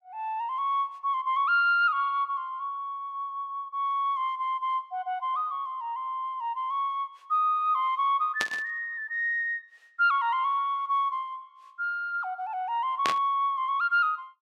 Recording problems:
static burst; at 8.5 s and at 13 s; peak +3 dB vs average level

